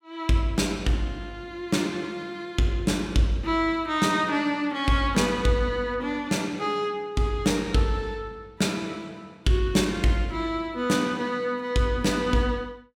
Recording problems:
none

